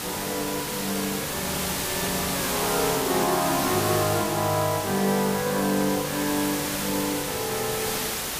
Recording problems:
hiss; slope -1 dB per octave, SNR 1 dB

